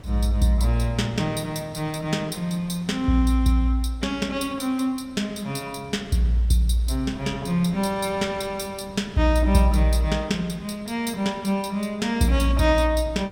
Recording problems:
wind on the microphone; below 360 Hz, SNR 22 dB

